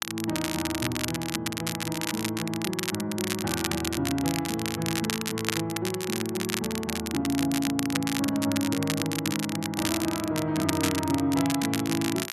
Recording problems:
crackling; vinyl, SNR 3 dB

